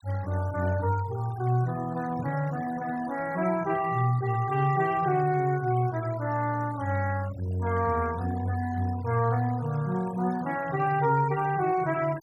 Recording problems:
noise reduction artefacts; signal-to-artefact ratio 18 dB

